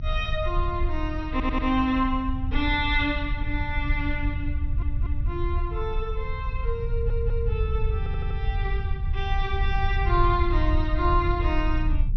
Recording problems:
treble cut off; nothing above 6.2 kHz
low-frequency rumble; below 76 Hz, SNR 0 dB
audio stuttering; 4 times, first at 1.5 s

